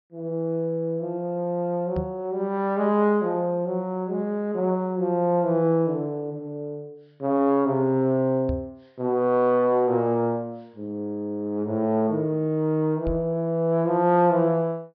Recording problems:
low-pass filter; nothing above 5.5 kHz
microphone thump; at 2 s, at 8.5 s and at 13 s; peak -2 dB vs average level

